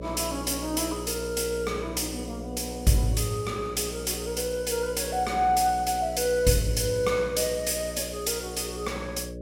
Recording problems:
hum; 60 Hz, harmonics up to 600 Hz, SNR 11 dB

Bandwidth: 16.5 kHz